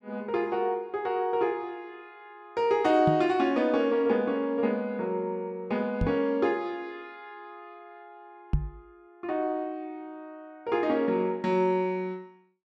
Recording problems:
knock on the microphone; at 3 s, at 6 s and at 8.5 s; peak +5 dB vs average level

